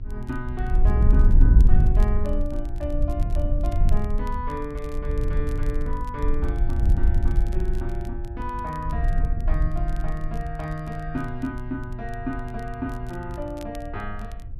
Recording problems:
electrical hum; 50 Hz, harmonics up to 500 Hz, SNR 17 dB
wind noise; below 62 Hz, SNR -7 dB
crackling; vinyl, SNR 22 dB

